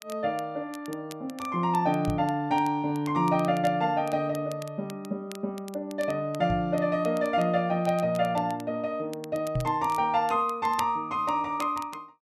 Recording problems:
crackling; vinyl, SNR 21 dB
microphone thump; at 2 s, at 6.5 s and at 9.5 s; peak +1 dB vs average level

